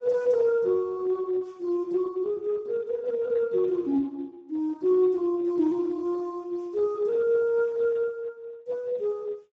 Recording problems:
codec artefacts; Speex, log-spectral distance 2 dB, nothing above 15.5 kHz

